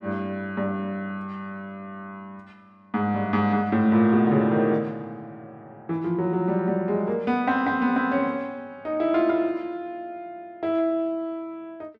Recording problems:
none

